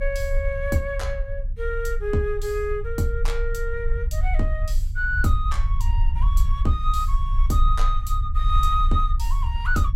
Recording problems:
low-frequency rumble; below 56 Hz, strongest tone 28 Hz, SNR -1 dB

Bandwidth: 16.5 kHz